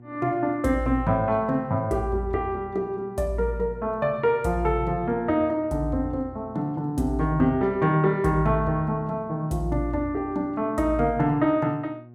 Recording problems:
hum; 60 Hz, harmonics up to 720 Hz, SNR 22 dB

